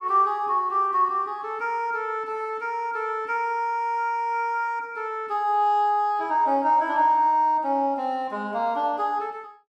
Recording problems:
none

